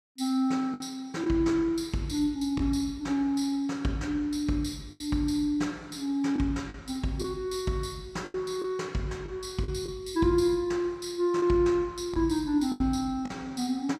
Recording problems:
packet loss; 4% of the sound replaced, filled with the last packet

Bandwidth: 15.5 kHz